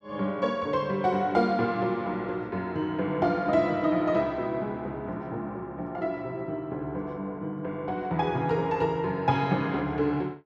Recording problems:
none

